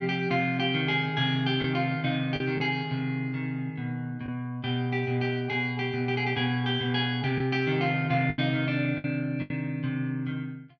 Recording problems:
packet loss; 3% of the sound replaced, filled with the last packet

